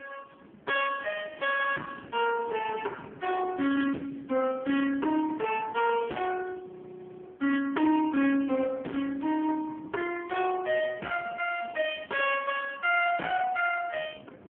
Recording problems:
telephone audio; 190 Hz to 3.3 kHz, AMR-NB
distorted audio; hard clipping, signal-to-distortion ratio 10 dB
wind on the microphone; below 580 Hz, SNR 20 dB
frozen audio; at 7 s for 0.5 s

